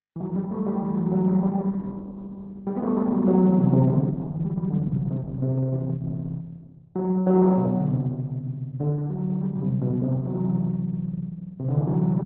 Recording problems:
lossy codec; Opus, log-spectral distance 2 dB

